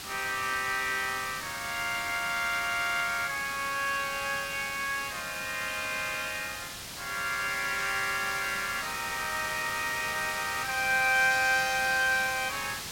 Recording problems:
hiss; slope 0 dB per octave, SNR 8 dB

